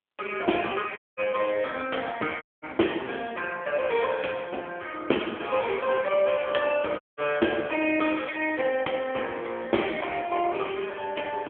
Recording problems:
phone line; 260 Hz to 3.3 kHz, AMR-NB
audio cutting out; at 1 s, at 2.5 s and at 7 s

